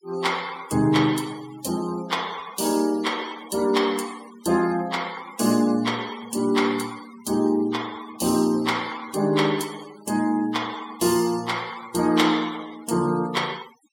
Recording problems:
noise reduction artefacts; signal-to-artefact ratio 18 dB

